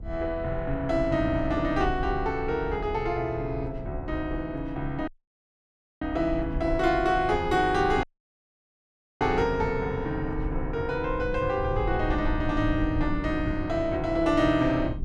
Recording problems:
low-frequency rumble; below 82 Hz, SNR 10 dB
audio cutting out; at 5 s for 1 s and at 8 s for 1 s

